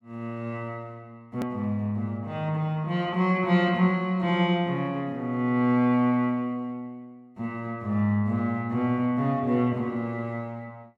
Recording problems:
hard cut with a click; at 1.5 s

